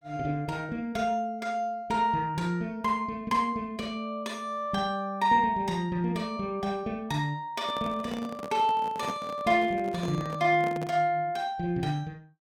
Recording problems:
handling noise; from 7.5 to 11 s; peak -4 dB vs average level

